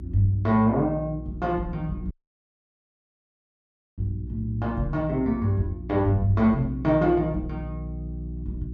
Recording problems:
hum; 60 Hz, harmonics up to 360 Hz, SNR 12 dB
audio cutting out; at 2 s for 2 s

